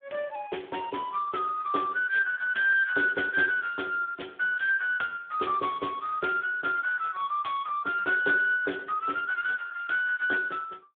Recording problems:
telephone audio; 300 Hz to 3.4 kHz, Speex

